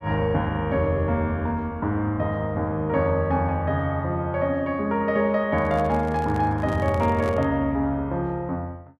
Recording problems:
microphone handling noise; from 5.5 to 7.5 s; peak -7 dB vs average level

